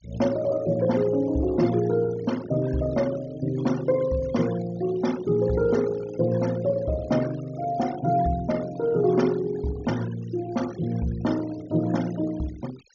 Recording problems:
treble missing; nothing above 6.7 kHz
denoising artefacts; signal-to-artefact ratio 19 dB

